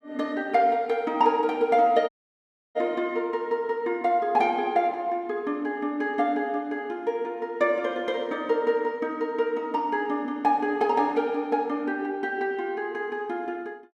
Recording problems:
dropout; at 2 s for 0.5 s

